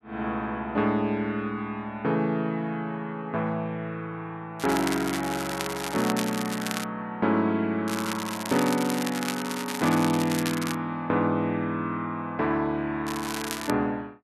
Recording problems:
crackling; from 4.5 to 7 s, from 8 to 11 s and at 13 s; loose cable, SNR 7 dB

